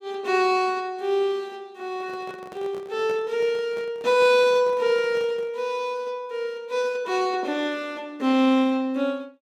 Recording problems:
microphone handling noise; from 2 to 5.5 s; peak -11 dB vs average level

